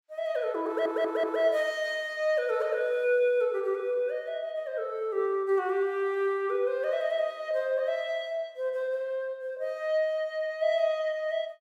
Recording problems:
audio stuttering; at 0.5 s

